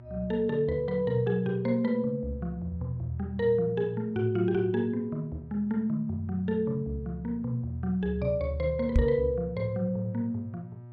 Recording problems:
hum; 60 Hz, harmonics up to 960 Hz, SNR 20 dB
knock on the microphone; at 9 s; peak +8 dB vs average level

